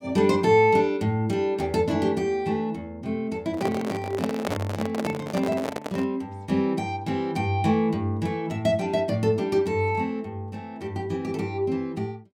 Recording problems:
microphone handling noise; from 3.5 to 6 s; peak +1 dB vs average level

